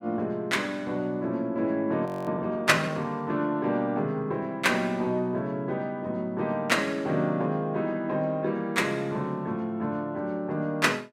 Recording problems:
audio freezing; at 2 s

